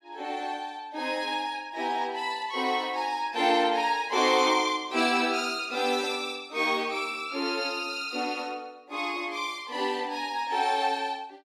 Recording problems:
none

